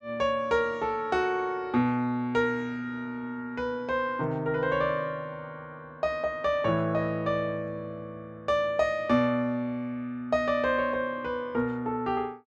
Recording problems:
none

